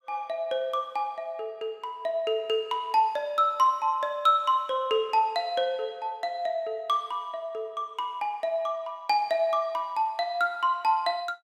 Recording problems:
none

